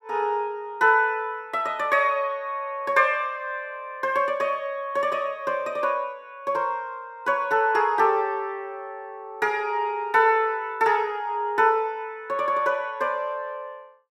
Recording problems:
none

